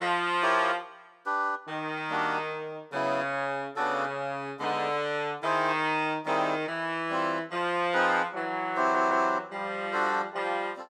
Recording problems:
stutter; at 9 s

